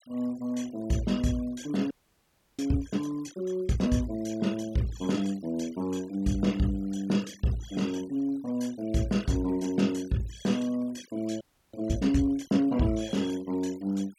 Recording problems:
noise reduction artefacts; signal-to-artefact ratio 21 dB
frozen audio; at 2 s for 0.5 s and at 11 s

